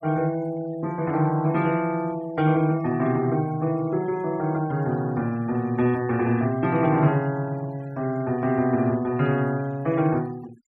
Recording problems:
noise reduction artefacts; signal-to-artefact ratio 23 dB

